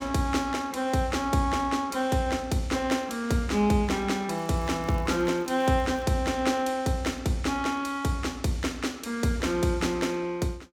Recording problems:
crackle; from 4.5 to 6 s; loose cable, SNR 29 dB

